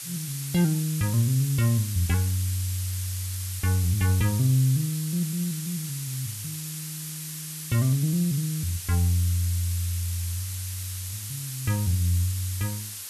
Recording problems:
background hiss; SNR 8 dB

